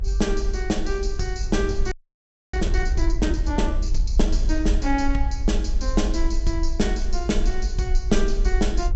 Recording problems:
treble cut off; nothing above 8 kHz
low-frequency rumble; below 48 Hz, SNR 0 dB
wind on the microphone; below 80 Hz, SNR 11 dB
audio freezing; at 2 s for 0.5 s

